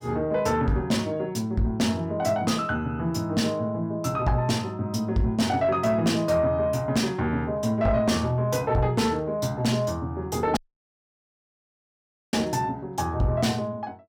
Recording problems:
distorted audio; soft clipping, signal-to-distortion ratio 10 dB
audio cutting out; at 11 s for 2 s

